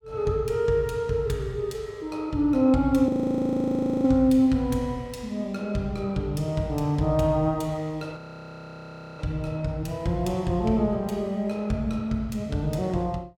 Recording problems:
audio freezing; at 3 s for 1 s and at 8 s for 1 s

